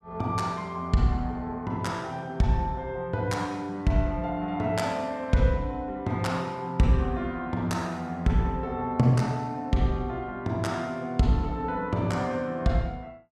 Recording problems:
none

